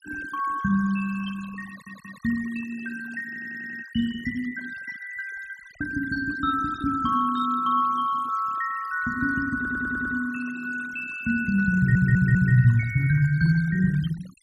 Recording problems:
noise reduction artefacts; signal-to-artefact ratio 16 dB
stutter; 4 times, first at 1.5 s

